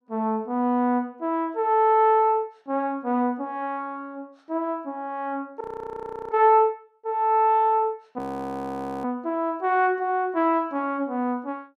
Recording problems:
frozen audio; at 5.5 s for 0.5 s and at 8 s for 1 s

